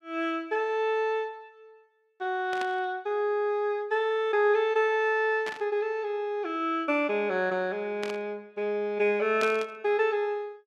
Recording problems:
burst of static; 4 times, first at 2.5 s; peak -5 dB vs average level

